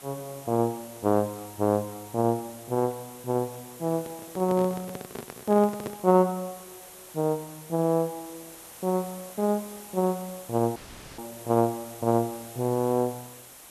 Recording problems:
background hiss; slope -2 dB per octave, SNR 17 dB
handling noise; from 4 to 6 s; peak -3 dB vs average level
dropout; at 11 s

